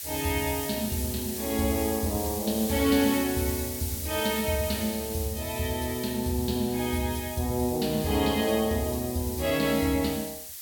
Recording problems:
hiss; slope +5 dB per octave, SNR 7 dB

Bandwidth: 17 kHz